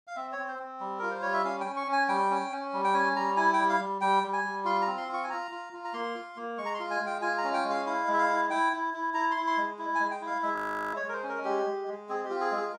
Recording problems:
audio freezing; at 11 s

